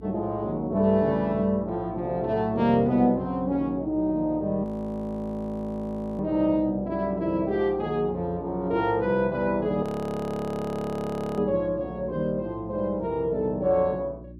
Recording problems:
hum; 60 Hz, harmonics up to 360 Hz, SNR 18 dB
audio freezing; at 4.5 s for 1.5 s and at 10 s for 1.5 s

